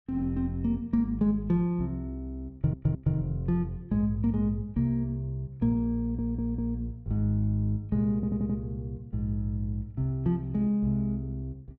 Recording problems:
audio stuttering; at 2.5 s, at 6 s and at 8 s

